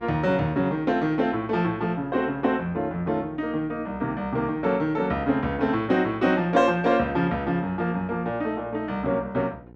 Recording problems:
hum; 60 Hz, harmonics up to 1 kHz, SNR 23 dB

